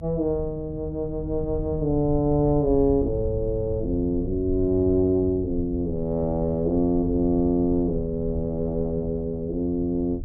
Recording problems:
rumble; below 96 Hz, SNR 11 dB

